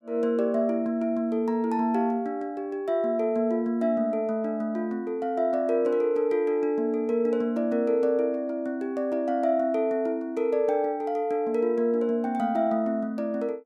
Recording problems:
none

